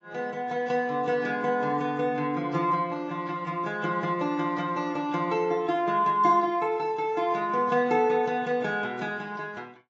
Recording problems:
lossy compression; AAC, log-spectral distance 2 dB, nothing above 6.7 kHz

